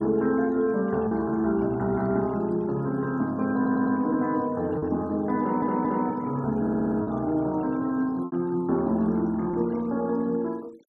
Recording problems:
denoising artefacts; signal-to-artefact ratio 26 dB
lost packets; 2% of the sound replaced, filled with repeated pitch periods
stutter; at 3.5 s, at 5.5 s and at 6.5 s

